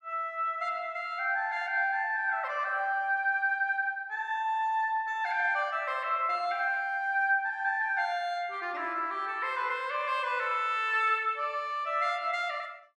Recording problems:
none

